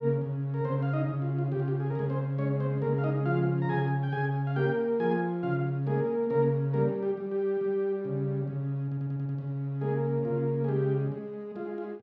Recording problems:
audio stuttering; at 9 s

